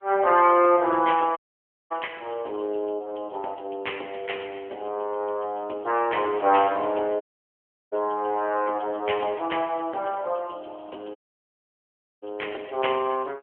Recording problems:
telephone audio; 300 Hz to 3.2 kHz, AMR-NB
dropout; at 1.5 s for 0.5 s, at 7 s for 0.5 s and at 11 s for 1 s

